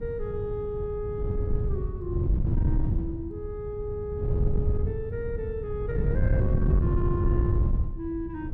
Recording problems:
distorted audio; soft clipping, signal-to-distortion ratio 11 dB
wind noise; below 120 Hz, SNR -5 dB

